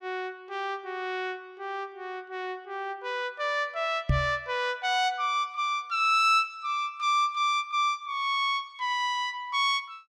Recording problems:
microphone bump; at 4 s; peak +6 dB vs average level

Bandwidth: 14.5 kHz